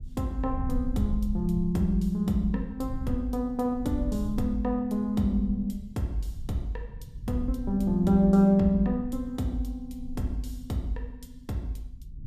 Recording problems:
rumble; below 78 Hz, SNR 12 dB

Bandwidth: 14.5 kHz